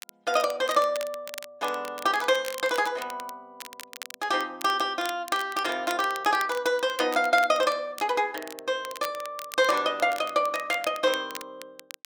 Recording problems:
crackling; vinyl, SNR 15 dB

